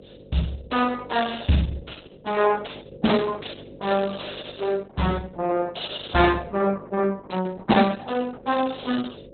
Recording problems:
lossy codec; Opus, log-spectral distance 9 dB, nothing above 4 kHz
electrical hum; 50 Hz, harmonics up to 700 Hz, SNR 21 dB

